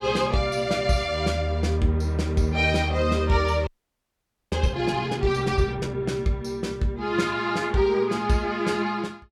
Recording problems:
audio freezing; at 3.5 s for 1 s

